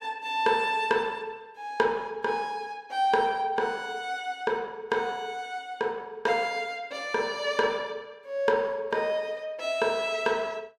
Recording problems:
none

